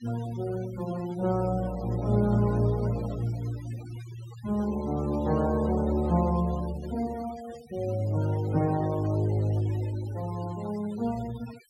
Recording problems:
denoising artefacts; signal-to-artefact ratio 18 dB

